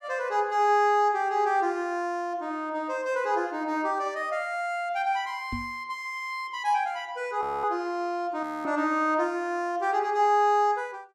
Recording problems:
microphone thump; at 5.5 s; peak -4 dB vs average level
frozen audio; at 7.5 s and at 8.5 s

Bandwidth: 15 kHz